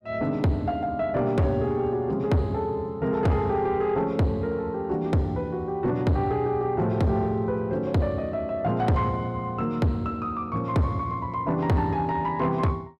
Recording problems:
distortion; soft clipping, signal-to-distortion ratio 10 dB

